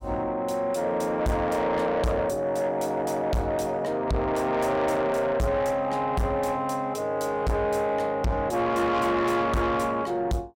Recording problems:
distortion; soft clipping, signal-to-distortion ratio 8 dB

